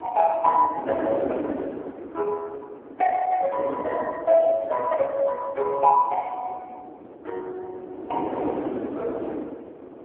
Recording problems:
phone line; 260 Hz to 2.5 kHz, AMR-NB
wind noise; below 550 Hz, SNR 10 dB

